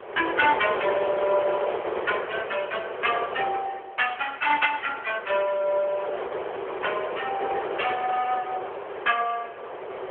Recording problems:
phone line; 370 Hz to 3.4 kHz, AMR-NB
wind on the microphone; below 980 Hz, SNR 5 dB

